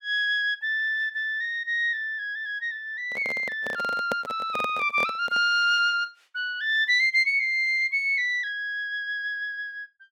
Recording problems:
handling noise; from 3 to 5.5 s; peak -1 dB vs average level

